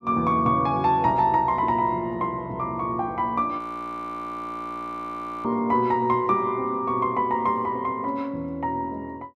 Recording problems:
frozen audio; at 3.5 s for 2 s

